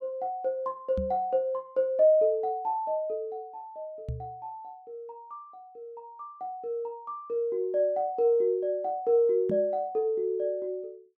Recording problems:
microphone thump; at 1 s, at 4 s and at 9.5 s; peak -2 dB vs average level

